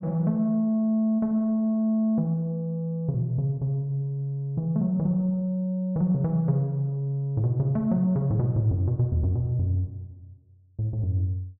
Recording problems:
none

